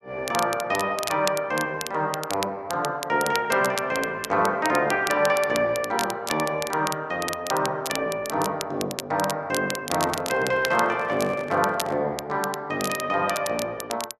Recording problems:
crackle; vinyl, SNR 10 dB
handling noise; from 10 to 12 s; peak -8 dB vs average level

